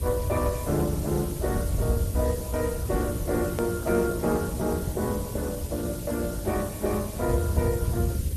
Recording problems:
lossy compression; Opus, then Opus, log-spectral distance 6 dB, nothing above 13.1 kHz
hum; 60 Hz, harmonics up to 540 Hz, SNR 14 dB
background hiss; slope +3 dB per octave, SNR 12 dB
low-frequency rumble; below 100 Hz, SNR 3 dB
hard cut with a click; at 3.5 s

